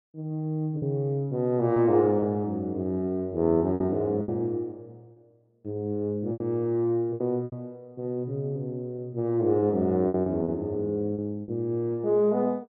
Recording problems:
lost packets; 6% of the sound replaced, filled with repeated pitch periods

